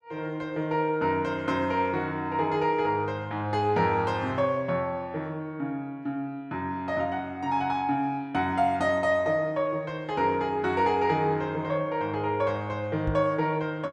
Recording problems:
microphone thump; at 13 s; peak -1 dB vs average level

